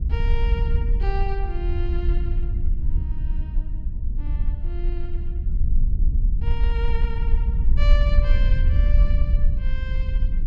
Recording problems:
low-frequency rumble; below 58 Hz, SNR -12 dB

